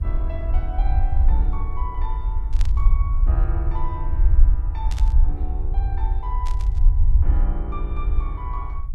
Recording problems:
hiss; slope -9 dB per octave, SNR 25 dB
rumble; below 58 Hz, SNR -13 dB
burst of static; at 2.5 s, at 5 s and at 6.5 s; peak +2 dB vs average level

